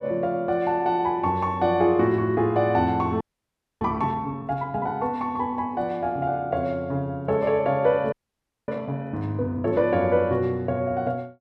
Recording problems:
audio freezing; at 3 s for 0.5 s and at 8 s for 0.5 s

